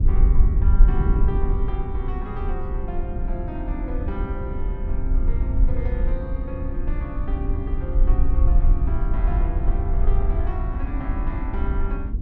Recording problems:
low-frequency rumble; below 56 Hz, SNR -9 dB
wind on the microphone; below 240 Hz, SNR 2 dB

